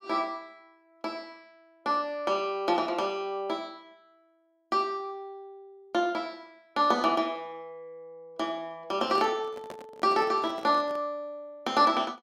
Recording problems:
microphone handling noise; from 9 to 11 s; peak -7 dB vs average level

